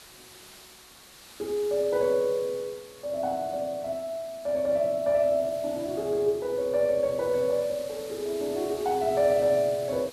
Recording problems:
hiss; slope 0 dB per octave, SNR 19 dB

